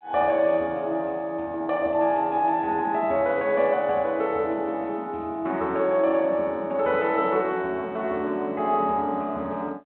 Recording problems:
telephone audio; 260 Hz to 3.6 kHz, G.726

